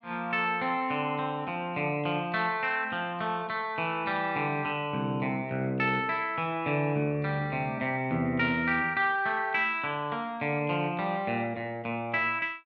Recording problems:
none

